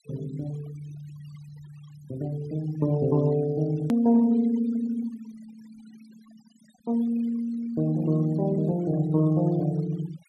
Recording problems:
denoising artefacts; signal-to-artefact ratio 23 dB
edit click; at 4 s

